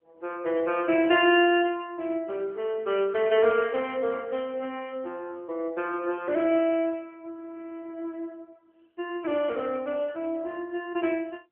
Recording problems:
phone line; 280 Hz to 3.2 kHz, AMR-NB

